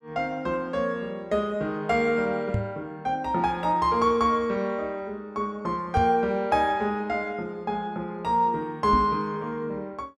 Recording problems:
microphone bump; at 2.5 s, at 6 s and at 9 s; peak +3 dB vs average level

